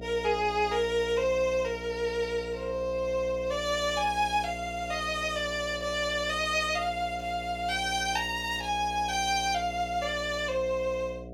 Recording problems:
electrical hum; 60 Hz, harmonics up to 720 Hz, SNR 13 dB

